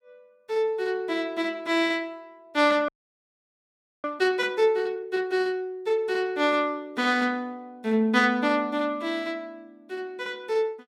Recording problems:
frozen audio; at 3 s for 1 s

